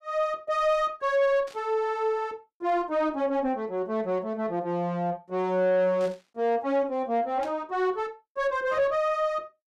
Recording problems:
distorted audio; soft clipping, signal-to-distortion ratio 11 dB
burst of static; at 1.5 s, at 6 s and at 7.5 s; peak -14 dB vs average level

